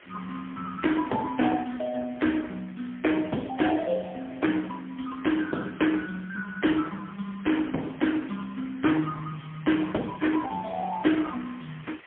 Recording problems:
phone line; 130 Hz to 3.3 kHz, AMR-NB, then MP3
hiss; SNR 23 dB

